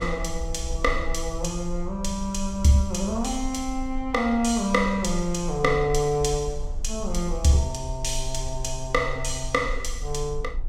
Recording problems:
rumble; below 48 Hz, strongest tone 20 Hz, SNR 10 dB

